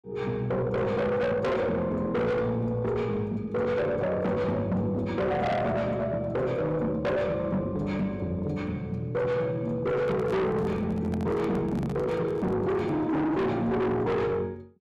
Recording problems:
distorted audio; soft clipping, signal-to-distortion ratio 7 dB
handling noise; from 10 to 13 s; peak -7 dB vs average level

